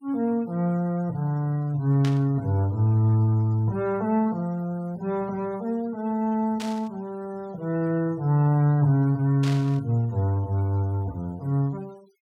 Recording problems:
denoising artefacts; signal-to-artefact ratio 28 dB
burst of static; at 2 s, at 6.5 s and at 9.5 s; peak -7 dB vs average level

